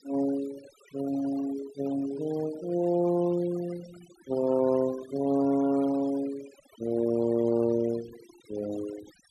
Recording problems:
noise reduction artefacts; signal-to-artefact ratio 17 dB

